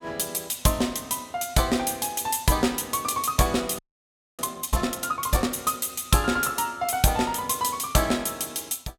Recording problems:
audio freezing; at 4 s for 0.5 s

